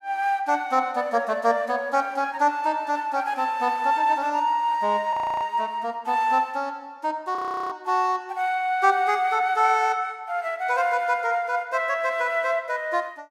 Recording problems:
frozen audio; at 5 s and at 7.5 s

